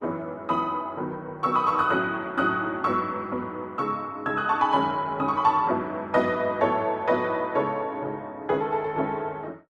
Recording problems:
lossy compression; Opus, log-spectral distance 2 dB, nothing above 11.6 kHz

